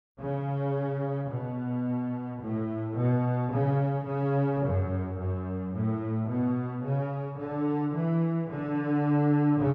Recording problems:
none

